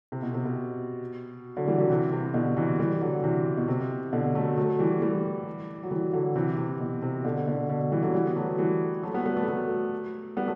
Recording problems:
none

